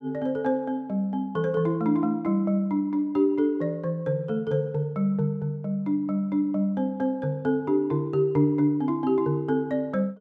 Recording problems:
none

